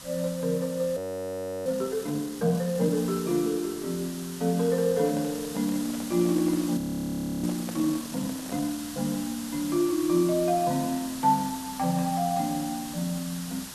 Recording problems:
hiss; SNR 12 dB
frozen audio; at 1 s for 0.5 s and at 7 s for 0.5 s
handling noise; from 5 to 8.5 s; peak -8 dB vs average level

